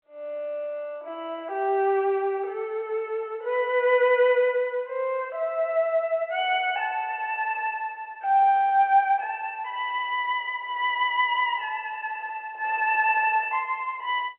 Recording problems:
phone line; 340 Hz to 3.1 kHz, G.711

